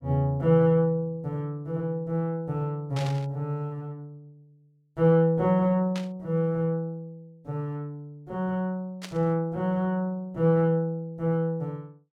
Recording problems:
static burst; at 3 s, at 6 s and at 9 s; peak -8 dB vs average level

